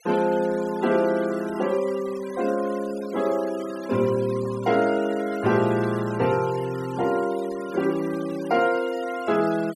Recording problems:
denoising artefacts; signal-to-artefact ratio 18 dB

